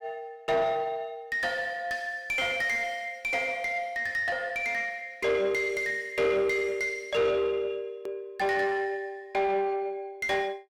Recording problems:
distortion; soft clipping, signal-to-distortion ratio 10 dB
hard cut with a click; at 8 s

